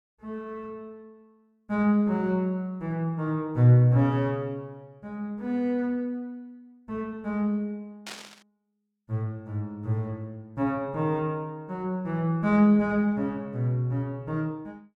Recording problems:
static burst; at 8 s; peak -7 dB vs average level

